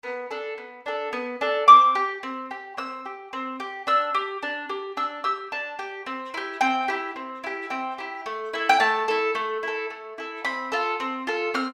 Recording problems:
none

